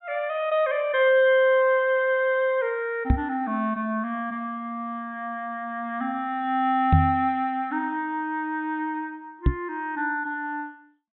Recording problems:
treble missing; nothing above 3.8 kHz
knock on the microphone; at 3 s, at 7 s and at 9.5 s; peak +10 dB vs average level

